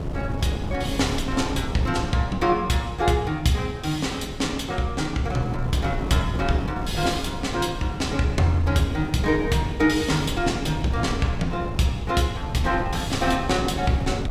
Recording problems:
wind on the microphone; below 250 Hz, SNR 7 dB

